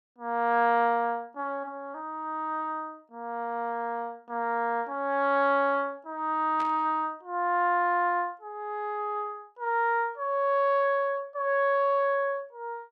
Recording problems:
burst of static; at 6.5 s; peak -10 dB vs average level

